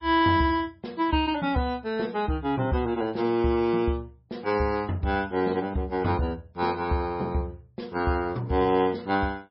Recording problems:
lossy compression; MP3, log-spectral distance 2 dB, nothing above 5.3 kHz

